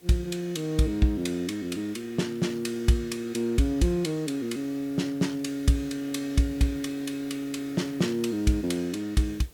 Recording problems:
hiss; SNR 25 dB

